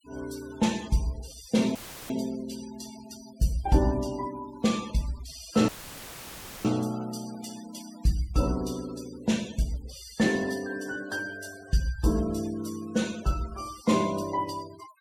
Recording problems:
noise reduction artefacts; signal-to-artefact ratio 19 dB
dropout; at 2 s and at 5.5 s for 1 s; filled with static

